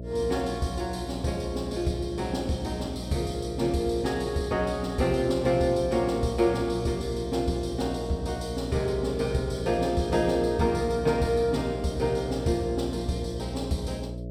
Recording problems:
electrical hum; 60 Hz, harmonics up to 660 Hz, SNR 9 dB

